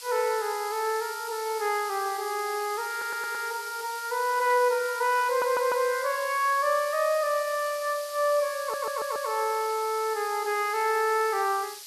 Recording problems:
background hiss; slope +5 dB per octave, SNR 13 dB
audio stuttering; at 3 s, at 5.5 s and at 8.5 s

